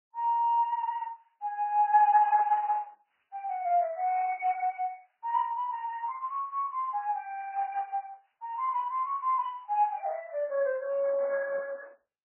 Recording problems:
lossy compression; Opus, then MP3, log-spectral distance 2 dB, nothing above 3 kHz

